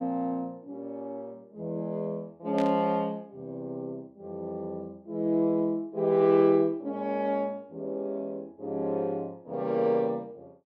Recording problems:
static burst; at 2.5 s; peak -7 dB vs average level

